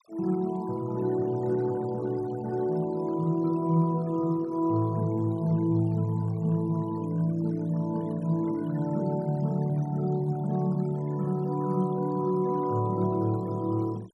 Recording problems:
denoising artefacts; signal-to-artefact ratio 23 dB

